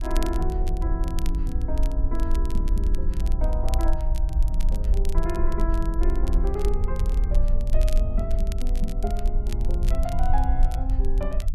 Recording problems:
rumble; below 50 Hz, SNR -7 dB
crackle; vinyl, SNR 13 dB

